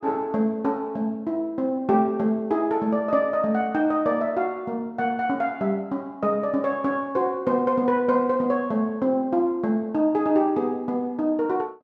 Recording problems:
none

